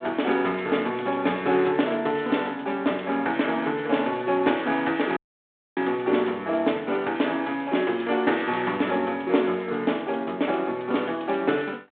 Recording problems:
phone line; 260 Hz to 3.7 kHz, G.726
audio cutting out; at 5 s for 0.5 s

